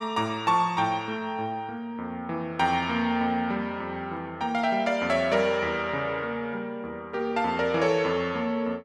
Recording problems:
none

